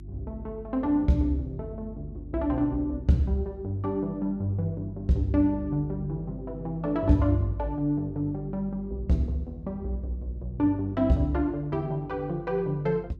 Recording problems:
mains hum; 50 Hz, harmonics up to 350 Hz, SNR 16 dB

